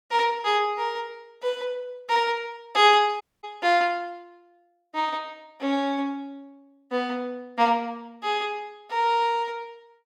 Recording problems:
audio cutting out; at 3 s

